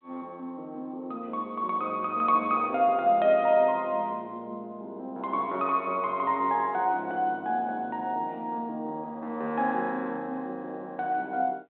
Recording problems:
phone line; 280 Hz to 3.8 kHz, G.726

